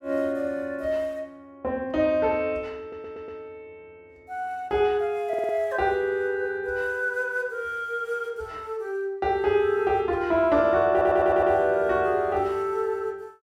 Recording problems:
stutter; at 3 s, at 5.5 s and at 11 s

